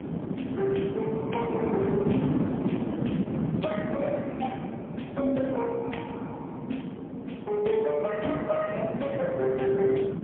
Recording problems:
phone line; 170 Hz to 3.3 kHz, AMR-NB, then MP3
wind noise; below 360 Hz, SNR 3 dB

